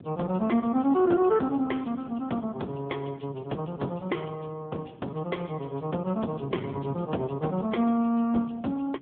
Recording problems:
phone line; 170 Hz to 3.3 kHz, AMR-NB
wind noise; below 300 Hz, SNR 18 dB

